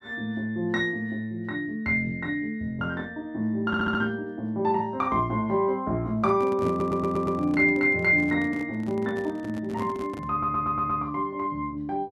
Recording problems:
audio stuttering; at 3.5 s, at 6.5 s and at 10 s
microphone handling noise; from 6 to 11 s; peak -4 dB vs average level

